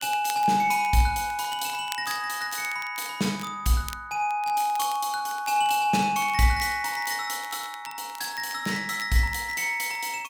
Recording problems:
crackling; vinyl, SNR 19 dB

